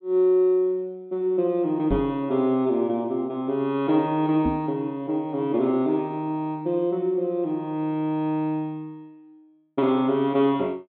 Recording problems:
treble missing; nothing above 4 kHz
knock on the microphone; at 2 s and at 4.5 s; peak +1 dB vs average level

